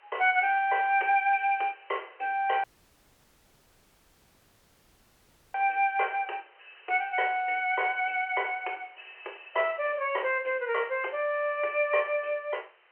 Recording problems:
telephone audio; 340 Hz to 3.1 kHz, G.711
hiss; SNR 30 dB
dropout; at 2.5 s for 3 s

